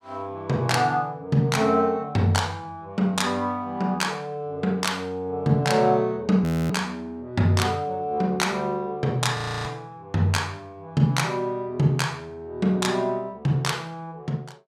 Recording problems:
audio freezing; at 6.5 s and at 9.5 s

